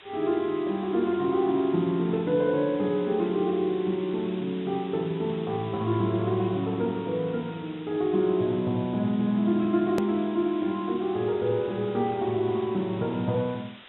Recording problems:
treble missing; nothing above 3.8 kHz
hiss; SNR 20 dB
click at an edit; at 10 s

